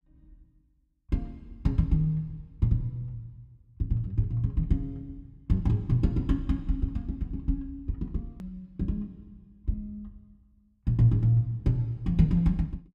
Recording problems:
hard cut with a click; at 8.5 s

